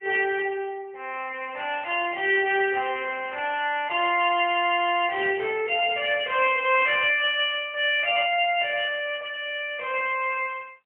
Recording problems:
telephone audio; 300 Hz to 3.2 kHz, AMR-NB, then MP3

